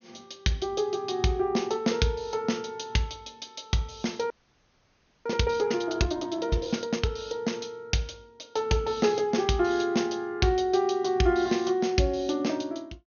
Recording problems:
treble missing; nothing above 6.6 kHz
audio freezing; at 4.5 s for 1 s

